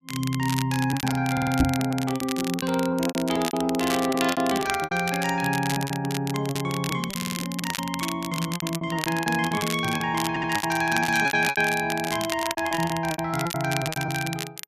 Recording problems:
crackling; vinyl, SNR 8 dB
lost packets; 16% of the sound replaced, filled with repeated pitch periods
audio stuttering; at 1.5 s, at 7 s and at 10 s
microphone thump; at 1.5 s; peak +6 dB vs average level

